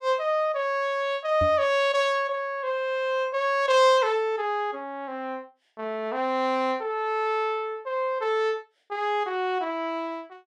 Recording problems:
microphone thump; at 1.5 s; peak -2 dB vs average level

